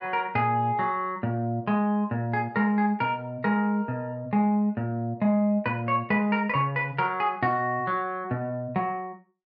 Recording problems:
none

